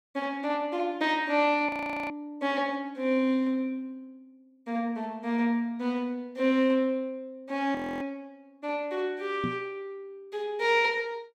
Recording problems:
audio freezing; at 1.5 s and at 8 s
microphone bump; at 9.5 s; peak 0 dB vs average level

